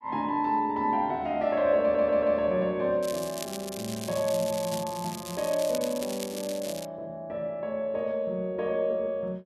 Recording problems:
stutter; at 2 s
crackling; from 3 to 6 s and from 6 to 7 s; loose cable, SNR 11 dB

